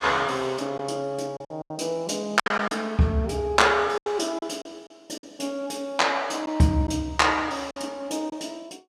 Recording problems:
lost packets; 7% of the sound replaced, filled with silence

